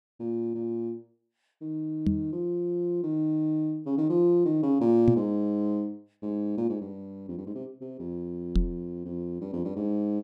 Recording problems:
microphone bump; at 2 s, at 5 s and at 8.5 s; peak +8 dB vs average level

